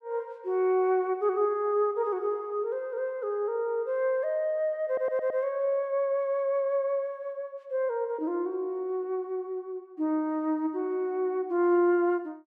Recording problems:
stutter; at 5 s

